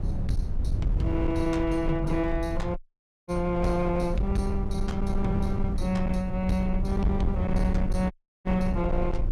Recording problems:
distortion; hard clipping, signal-to-distortion ratio 12 dB
rumble; below 86 Hz, SNR 3 dB
wind noise; below 190 Hz, SNR 18 dB
dropout; at 3 s for 0.5 s and at 8 s

